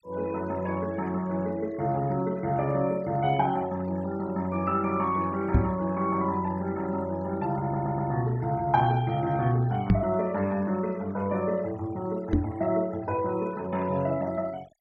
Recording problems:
noise reduction artefacts; signal-to-artefact ratio 22 dB
microphone thump; at 5.5 s, at 10 s and at 12 s; peak +9 dB vs average level
stutter; at 7.5 s

